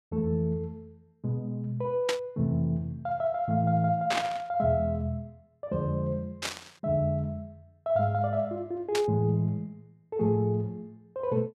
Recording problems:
burst of static; 4 times, first at 2 s; peak +3 dB vs average level

